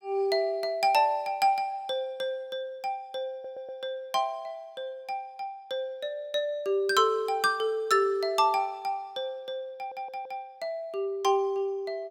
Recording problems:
stutter; at 3.5 s and at 10 s

